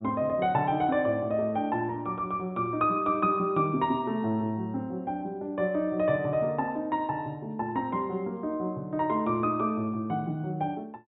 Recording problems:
low-pass filter; nothing above 4 kHz

